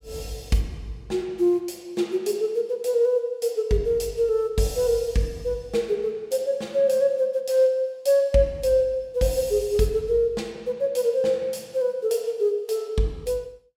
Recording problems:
none

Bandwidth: 16 kHz